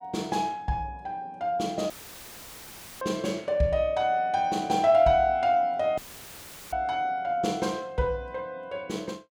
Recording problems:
dropout; at 2 s for 1 s and at 6 s for 0.5 s; filled with static

